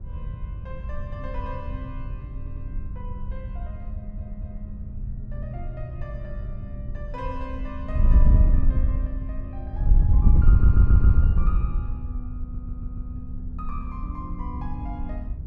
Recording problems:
wind noise; below 76 Hz, SNR -13 dB
stutter; 4 times, first at 2.5 s

